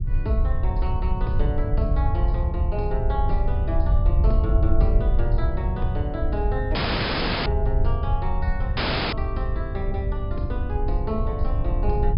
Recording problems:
low-pass filter; nothing above 5.5 kHz
rumble; below 76 Hz, SNR -5 dB
audio cutting out; at 7 s for 0.5 s and at 9 s

